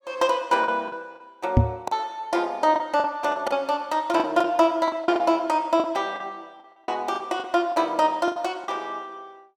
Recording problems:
packet loss; 10% of the sound replaced, filled with the last packet
microphone thump; at 1.5 s; peak +9 dB vs average level

